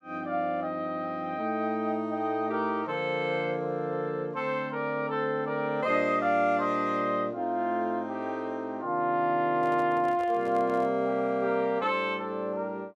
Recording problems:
microphone handling noise; from 9.5 to 11 s; peak -11 dB vs average level

